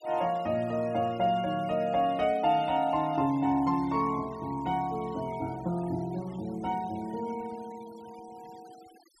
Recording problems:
denoising artefacts; signal-to-artefact ratio 23 dB

